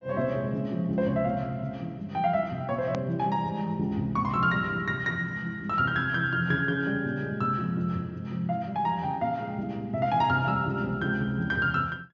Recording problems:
treble missing; nothing above 6.9 kHz
hard cut with a click; at 3 s

